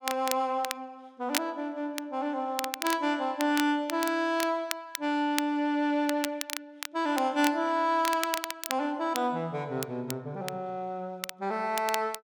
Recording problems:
crackle; vinyl, SNR 8 dB

